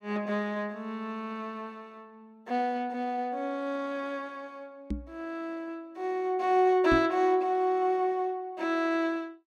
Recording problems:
knock on the microphone; at 5 s and at 7 s; peak +2 dB vs average level

